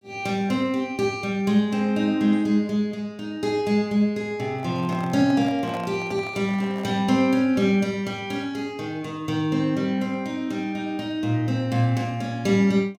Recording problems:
microphone handling noise; from 4.5 to 7 s; peak -8 dB vs average level

